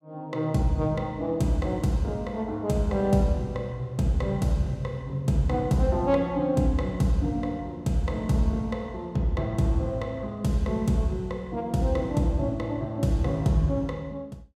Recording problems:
none

